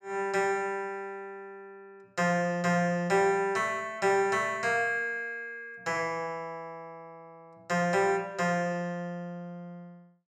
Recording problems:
none

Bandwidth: 14 kHz